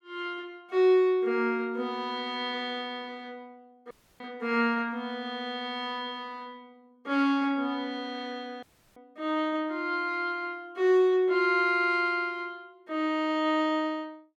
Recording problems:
dropout; at 4 s and at 8.5 s

